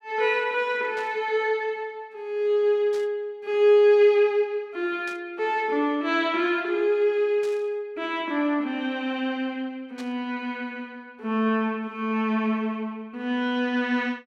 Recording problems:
burst of static; 5 times, first at 1 s; peak -13 dB vs average level

